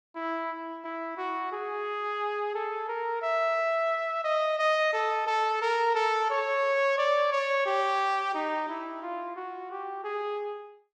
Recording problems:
none

